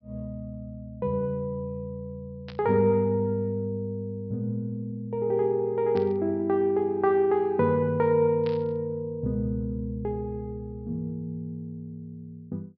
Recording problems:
low-pass filter; nothing above 5.5 kHz
burst of static; at 2.5 s, at 6 s and at 8.5 s; peak -11 dB vs average level

